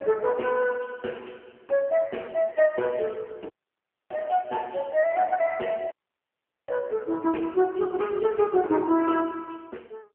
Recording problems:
phone line; 260 Hz to 3.1 kHz, AMR-NB
dropout; at 3.5 s for 0.5 s and at 6 s for 1 s

